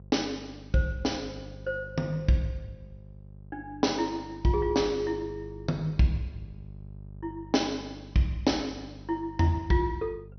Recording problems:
low-pass filter; nothing above 6 kHz
hum; 50 Hz, harmonics up to 450 Hz, SNR 17 dB

